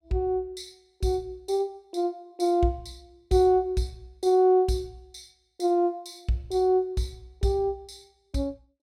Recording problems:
none

